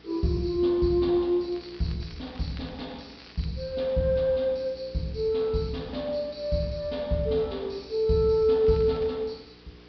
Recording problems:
treble missing; nothing above 5.5 kHz
hum; 60 Hz, harmonics up to 480 Hz, SNR 25 dB
hiss; slope -2 dB per octave, SNR 27 dB
crackling; at 1.5 s, from 2 to 3.5 s and at 8.5 s; loose cable, SNR 25 dB

